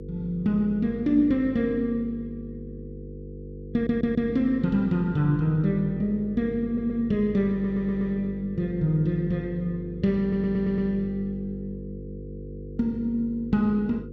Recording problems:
electrical hum; 50 Hz, harmonics up to 500 Hz, SNR 13 dB
audio stuttering; 4 times, first at 3.5 s

